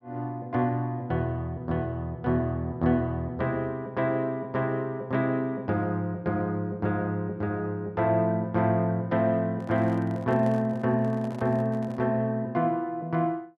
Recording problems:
handling noise; from 9.5 to 12 s; peak -9 dB vs average level

